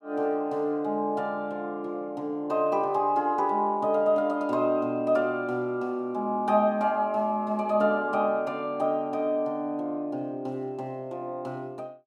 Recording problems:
none

